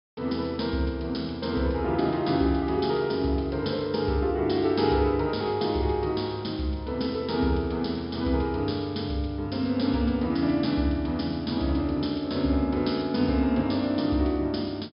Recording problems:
treble cut off; nothing above 5.5 kHz

